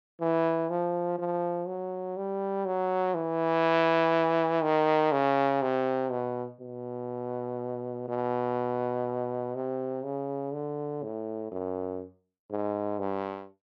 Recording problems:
none

